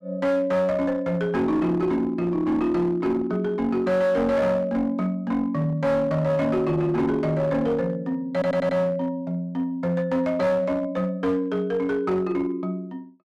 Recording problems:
distorted audio; hard clipping, uneven, signal-to-distortion ratio 12 dB
audio stuttering; at 8.5 s

